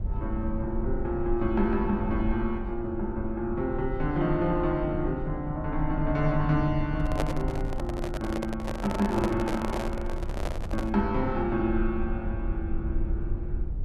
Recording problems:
rumble; below 70 Hz, SNR 6 dB
handling noise; from 7 to 11 s; peak +3 dB vs average level

